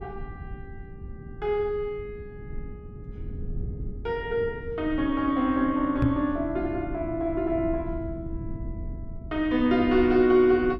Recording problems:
rumble; below 130 Hz, SNR 14 dB
microphone bump; at 6 s; peak +4 dB vs average level

